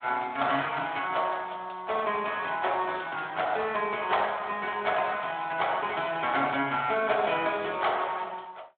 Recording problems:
phone line; 240 Hz to 3.5 kHz, Speex

